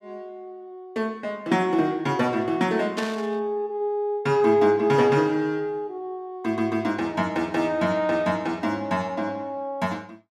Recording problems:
static burst; at 3 s; peak -4 dB vs average level

